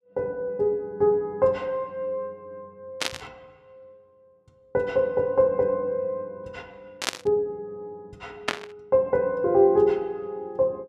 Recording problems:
static burst; at 3 s, at 7 s and at 8.5 s; peak +4 dB vs average level

